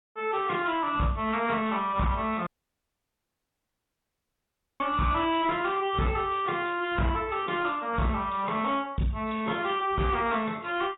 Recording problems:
codec artefacts; AAC, log-spectral distance 3 dB, nothing above 3.5 kHz
distortion; soft clipping, signal-to-distortion ratio 11 dB
dropout; at 2.5 s for 2.5 s

